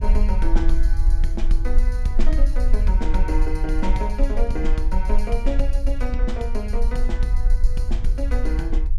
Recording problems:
low-frequency rumble; below 42 Hz, strongest tone 18 Hz, SNR -6 dB

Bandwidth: 16.5 kHz